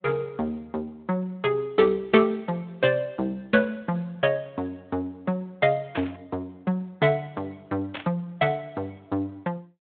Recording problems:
phone line; 150 Hz to 3.6 kHz, Speex
static burst; at 6 s and at 8 s; peak -2 dB vs average level

